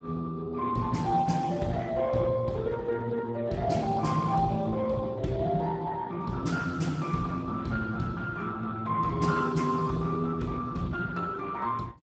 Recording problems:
codec artefacts; Speex, log-spectral distance 3 dB, nothing above 7.8 kHz

